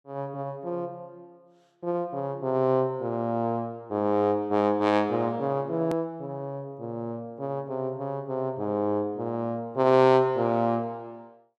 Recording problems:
click at an edit; at 6 s

